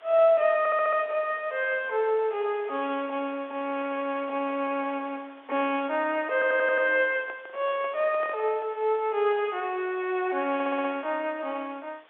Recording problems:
telephone audio; 300 Hz to 3.6 kHz, G.711
background hiss; SNR 27 dB
audio stuttering; at 0.5 s, at 6.5 s and at 11 s
handling noise; from 7.5 to 9 s; peak -11 dB vs average level

